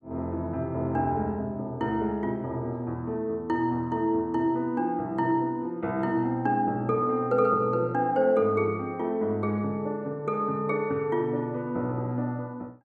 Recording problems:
none

